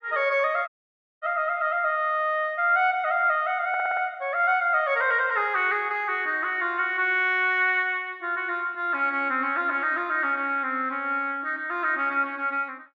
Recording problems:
audio cutting out; at 0.5 s for 0.5 s
audio stuttering; at 3.5 s

